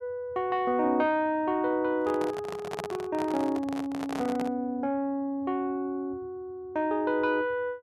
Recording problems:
handling noise; from 2 to 4.5 s; peak -1 dB vs average level

